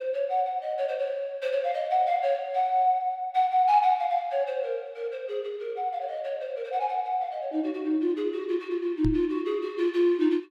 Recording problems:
microphone thump; at 9 s; peak +2 dB vs average level

